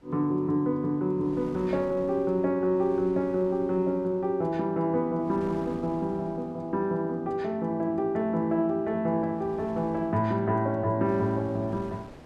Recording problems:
wind on the microphone; below 700 Hz, SNR 22 dB

